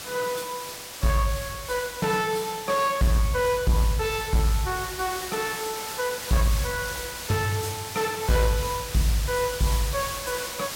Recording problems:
distortion; soft clipping, signal-to-distortion ratio 10 dB
hiss; slope 0 dB per octave, SNR 8 dB

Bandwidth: 16.5 kHz